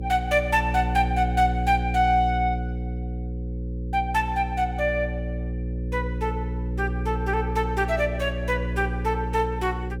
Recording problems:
hum; 60 Hz, harmonics up to 540 Hz, SNR 4 dB

